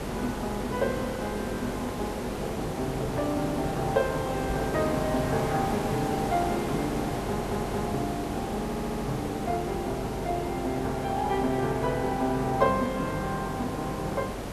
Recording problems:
electrical hum; 50 Hz, harmonics up to 450 Hz, SNR 13 dB
background hiss; slope -7 dB per octave, SNR 4 dB
knock on the microphone; at 4.5 s; peak 0 dB vs average level
stutter; at 7 s and at 8.5 s

